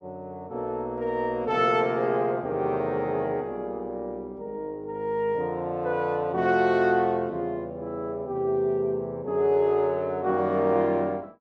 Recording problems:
none

